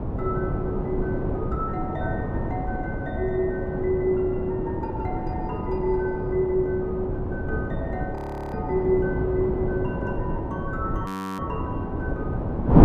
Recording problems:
wind noise; below 370 Hz, SNR 0 dB
audio freezing; at 8 s and at 11 s

